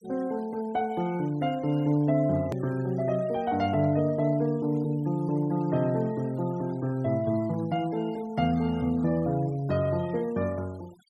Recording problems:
denoising artefacts; signal-to-artefact ratio 26 dB
hard cut with a click; at 2.5 s

